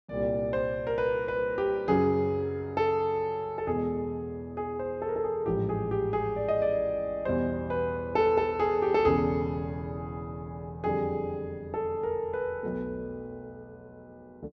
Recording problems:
none

